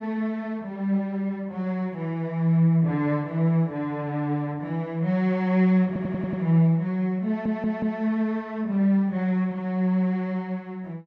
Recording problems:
stutter; at 6 s and at 7.5 s

